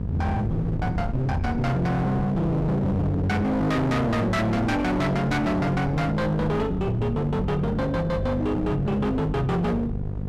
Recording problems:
distorted audio; hard clipping, signal-to-distortion ratio 7 dB
hum; 50 Hz, harmonics up to 750 Hz, SNR 8 dB
wind on the microphone; below 200 Hz, SNR 11 dB

